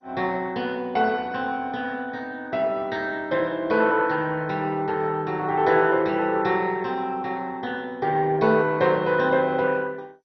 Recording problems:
codec artefacts; MP2, log-spectral distance 3 dB, nothing above 5.5 kHz

